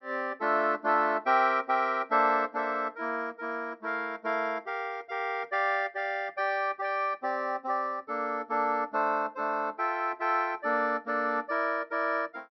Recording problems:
treble missing; nothing above 5.8 kHz

